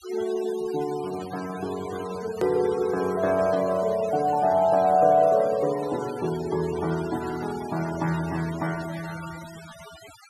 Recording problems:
denoising artefacts; signal-to-artefact ratio 16 dB
edit click; at 2.5 s

